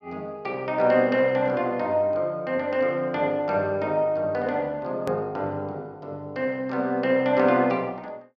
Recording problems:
hard cut with a click; at 5 s

